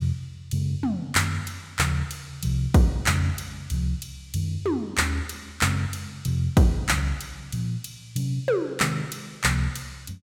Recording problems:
none

